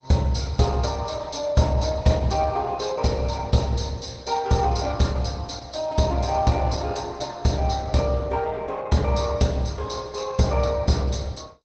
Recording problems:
lossy compression; Opus, log-spectral distance 5 dB

